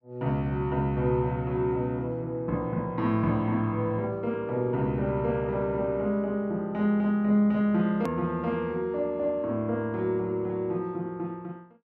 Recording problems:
click at an edit; at 8 s

